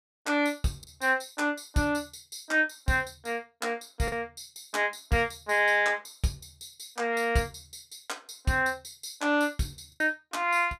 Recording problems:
lost packets; 1.5% of the sound replaced, filled with the last packet

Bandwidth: 15.5 kHz